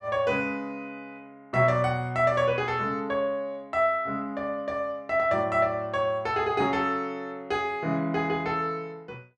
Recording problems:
none

